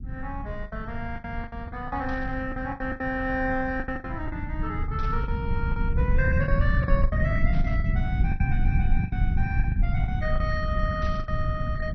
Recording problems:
lossy codec; MP2, log-spectral distance 2 dB, nothing above 6 kHz
low-frequency rumble; below 120 Hz, SNR -3 dB
packet loss; 12% of the sound replaced, filled with the last packet
static burst; 4 times, first at 2 s; peak -10 dB vs average level

